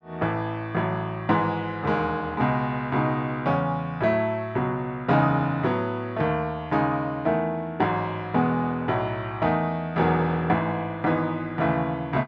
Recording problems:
none

